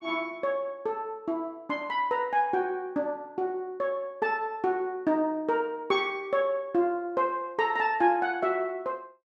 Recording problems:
none

